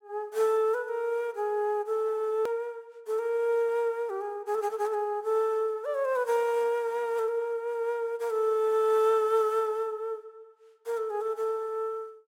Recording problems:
edit click; at 2.5 s

